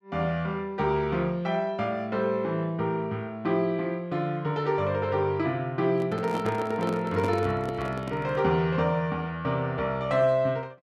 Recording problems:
handling noise; from 6 to 8.5 s; peak -1 dB vs average level

